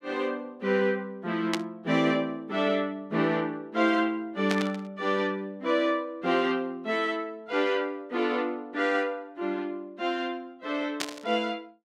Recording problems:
static burst; at 1.5 s, at 4.5 s and at 11 s; peak +3 dB vs average level

